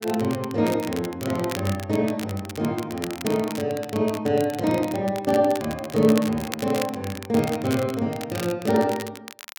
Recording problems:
crackling; vinyl, SNR 13 dB

